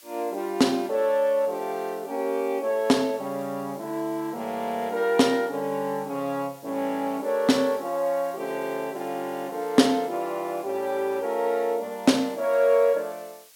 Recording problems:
hiss; slope +2 dB per octave, SNR 24 dB

